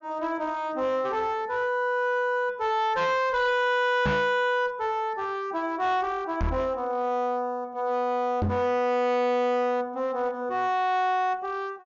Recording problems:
treble cut off; nothing above 6.9 kHz
distorted audio; hard clipping, uneven, signal-to-distortion ratio 10 dB
microphone thump; at 4 s, at 6.5 s and at 8.5 s; peak +4 dB vs average level

